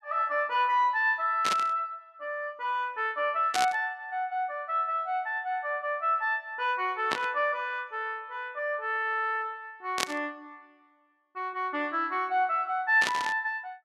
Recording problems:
static burst; 5 times, first at 1.5 s; peak +4 dB vs average level

